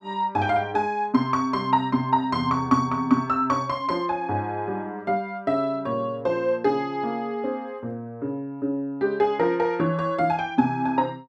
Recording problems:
none

